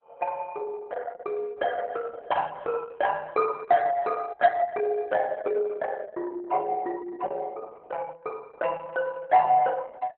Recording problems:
codec artefacts; Opus, log-spectral distance 3 dB

